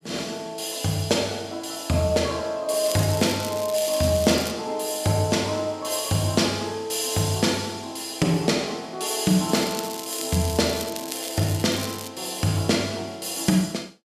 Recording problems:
crackle; from 3 to 4.5 s and from 9.5 to 12 s; loose cable, SNR 11 dB

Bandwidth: 14.5 kHz